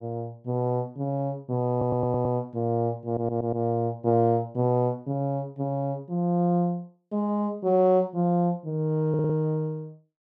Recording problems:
stutter; at 1.5 s, at 3 s and at 9 s

